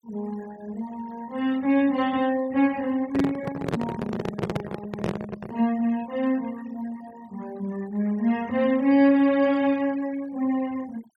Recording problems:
denoising artefacts; signal-to-artefact ratio 22 dB
microphone handling noise; from 3 to 5.5 s; peak +2 dB vs average level

